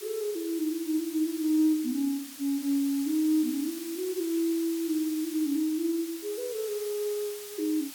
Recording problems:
background hiss; slope +3 dB per octave, SNR 12 dB

